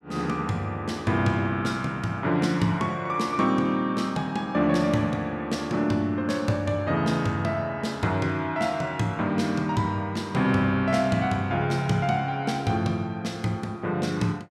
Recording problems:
none

